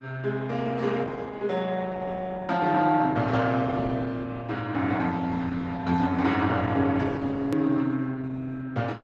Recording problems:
codec artefacts; Opus, log-spectral distance 3 dB, nothing above 13.1 kHz
edit click; at 7.5 s

